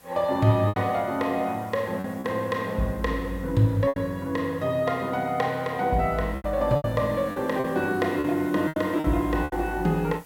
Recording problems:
background hiss; slope -4 dB per octave, SNR 25 dB
packet loss; 7% of the sound replaced, filled with repeated pitch periods

